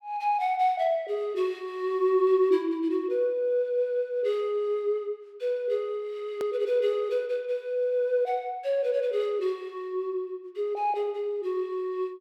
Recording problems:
click at an edit; at 6.5 s

